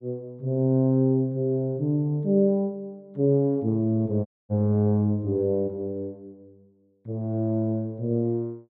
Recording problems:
audio cutting out; at 4.5 s

